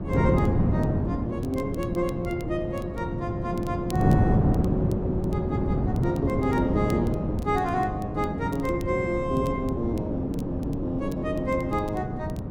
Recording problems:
wind noise; below 290 Hz, SNR -2 dB
crackle; vinyl, SNR 23 dB

